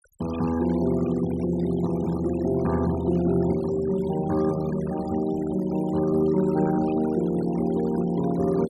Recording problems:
denoising artefacts; signal-to-artefact ratio 18 dB

